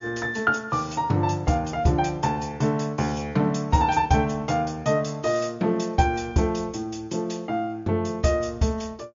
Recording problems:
treble cut off; nothing above 7.1 kHz
codec artefacts; MP3, log-spectral distance 3 dB

